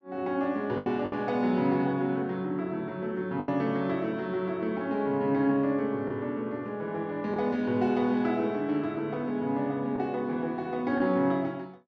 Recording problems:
packet loss; 3% of the sound replaced, filled with the last packet

